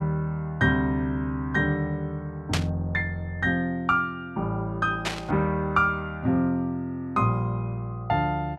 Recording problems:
burst of static; at 2.5 s and at 5 s; peak +4 dB vs average level

